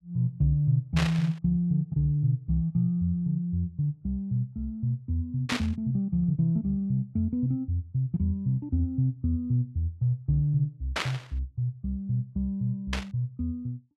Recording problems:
static burst; 4 times, first at 1 s; peak +3 dB vs average level

